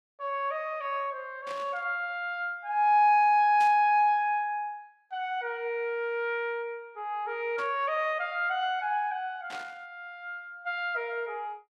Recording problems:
burst of static; 4 times, first at 1.5 s; peak -11 dB vs average level

